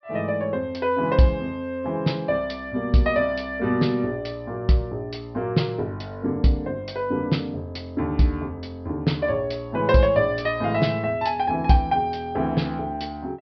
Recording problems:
treble cut off; nothing above 5.5 kHz

